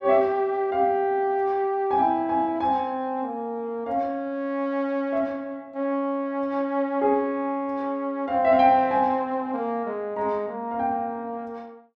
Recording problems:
none

